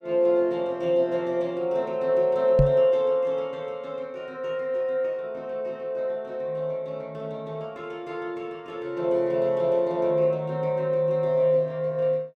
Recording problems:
knock on the microphone; at 2.5 s; peak +7 dB vs average level

